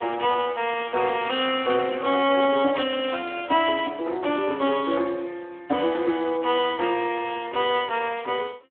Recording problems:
telephone audio; 260 Hz to 3.5 kHz, Speex

